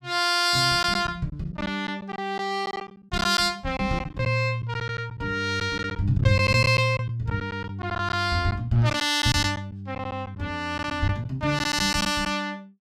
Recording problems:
packet loss; 8% of the sound replaced, filled with silence

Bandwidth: 15.5 kHz